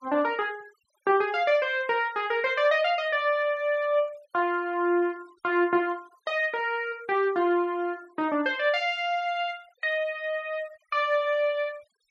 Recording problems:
denoising artefacts; signal-to-artefact ratio 27 dB

